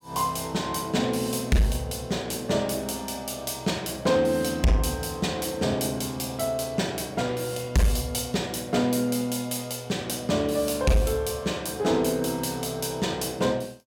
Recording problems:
distorted audio; soft clipping, signal-to-distortion ratio 10 dB

